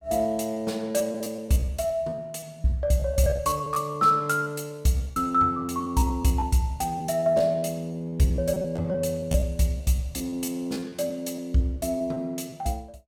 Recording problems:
packet loss; 13% of the sound replaced, filled with repeated pitch periods

